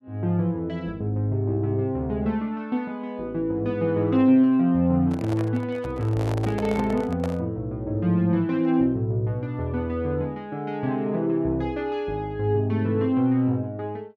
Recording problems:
microphone handling noise; from 5 to 7.5 s; peak -5 dB vs average level

